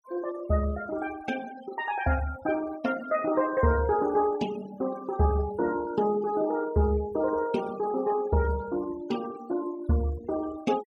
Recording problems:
denoising artefacts; signal-to-artefact ratio 18 dB

